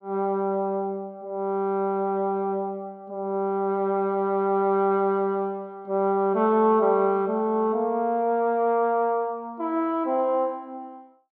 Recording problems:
none

